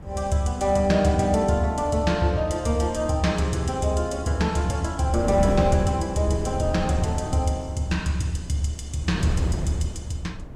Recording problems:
wind noise; below 230 Hz, SNR 10 dB

